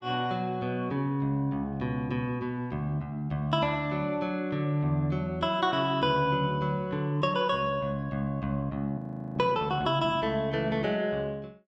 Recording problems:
audio freezing; at 9 s

